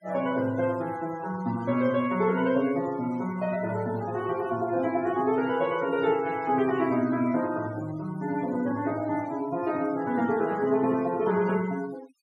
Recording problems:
denoising artefacts; signal-to-artefact ratio 18 dB

